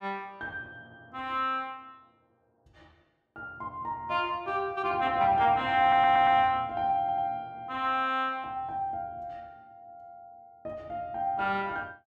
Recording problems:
stutter; at 6 s and at 7 s

